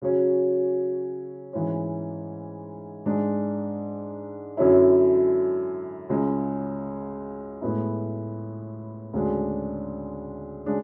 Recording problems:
none

